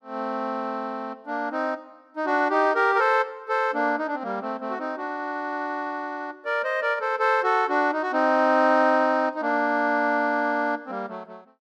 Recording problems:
none

